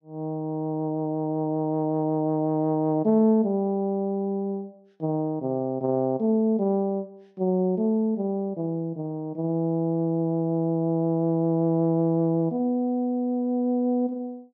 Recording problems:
none

